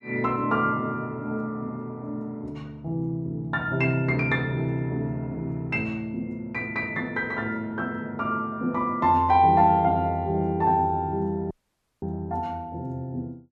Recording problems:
audio cutting out; at 12 s for 0.5 s

